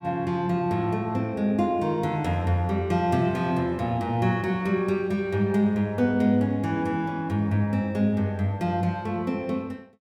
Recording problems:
none

